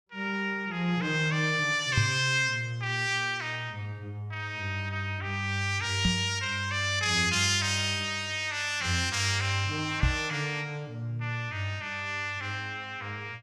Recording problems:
microphone bump; at 2 s, at 6 s and at 10 s; peak +6 dB vs average level

